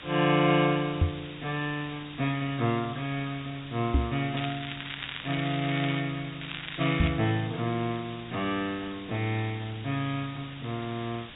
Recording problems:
treble missing; nothing above 4 kHz
background hiss; SNR 14 dB
knock on the microphone; at 1 s, at 4 s and at 7 s; peak +8 dB vs average level
crackling; from 4.5 to 6 s and at 6.5 s; loose cable, SNR 8 dB

